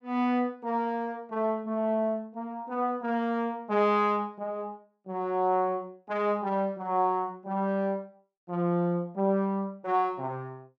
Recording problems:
none

